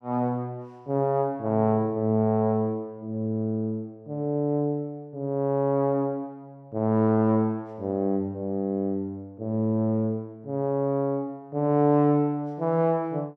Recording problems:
none

